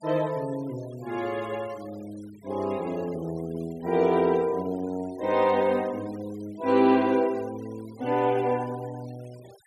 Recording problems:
denoising artefacts; signal-to-artefact ratio 24 dB

